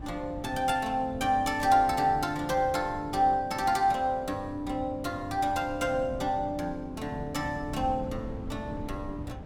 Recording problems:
wind noise; below 220 Hz, SNR 14 dB

